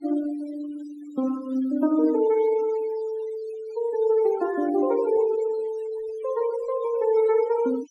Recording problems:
denoising artefacts; signal-to-artefact ratio 18 dB

